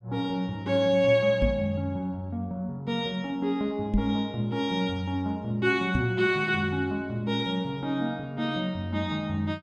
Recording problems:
microphone bump; at 1.5 s, at 4 s and at 6 s; peak +4 dB vs average level

